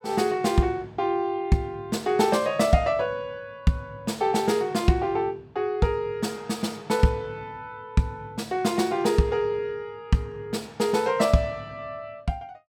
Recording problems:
none

